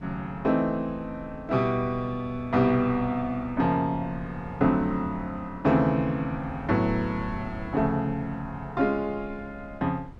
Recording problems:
wind on the microphone; below 170 Hz, SNR 17 dB

